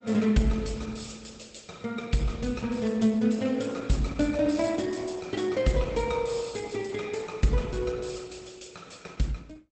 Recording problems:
codec artefacts; Opus, log-spectral distance 6 dB, nothing above 8.2 kHz

